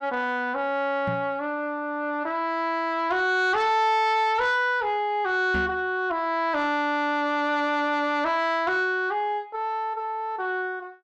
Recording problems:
distortion; soft clipping, signal-to-distortion ratio 11 dB
microphone bump; at 1 s and at 5.5 s; peak -2 dB vs average level

